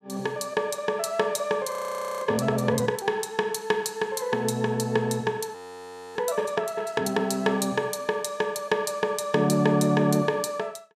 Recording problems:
frozen audio; at 1.5 s for 0.5 s and at 5.5 s for 0.5 s

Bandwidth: 14.5 kHz